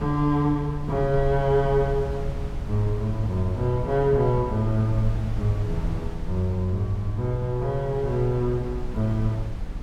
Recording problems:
hum; 60 Hz, harmonics up to 300 Hz, SNR 20 dB
wind on the microphone; below 82 Hz, SNR 9 dB

